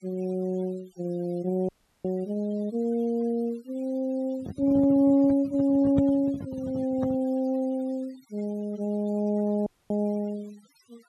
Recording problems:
noise reduction artefacts; signal-to-artefact ratio 24 dB
dropout; at 1.5 s and at 9.5 s
microphone handling noise; from 4.5 to 7.5 s; peak +3 dB vs average level

